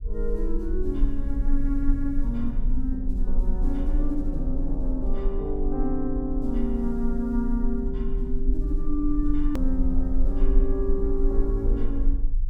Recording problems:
rumble; below 38 Hz, strongest tone 20 Hz, SNR 0 dB
edit click; at 9.5 s

